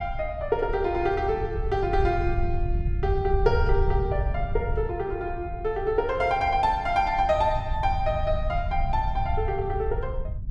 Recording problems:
low-frequency rumble; below 86 Hz, SNR 5 dB

